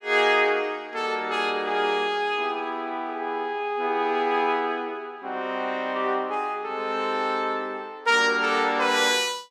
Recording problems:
none

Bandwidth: 14.5 kHz